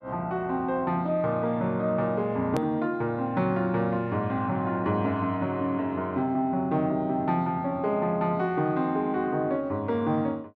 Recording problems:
hard cut with a click; at 2.5 s

